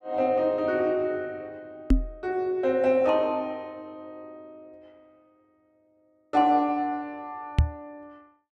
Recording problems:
knock on the microphone; at 2 s and at 7.5 s; peak +8 dB vs average level

